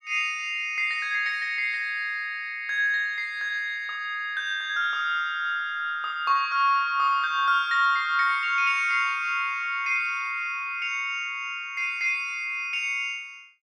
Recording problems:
none

